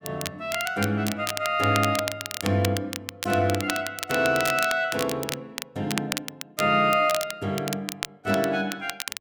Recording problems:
crackle; vinyl, SNR 8 dB

